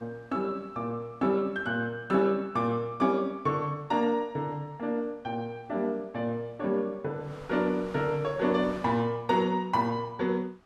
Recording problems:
wind on the microphone; below 1.7 kHz, SNR 24 dB

